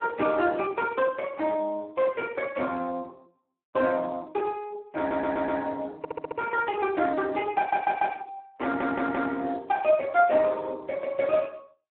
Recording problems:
phone line; 260 Hz to 2.8 kHz, Speex
stutter; 4 times, first at 5 s

